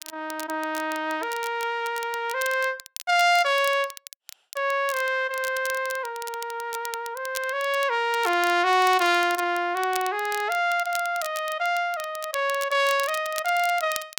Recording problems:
crackle; vinyl, SNR 15 dB

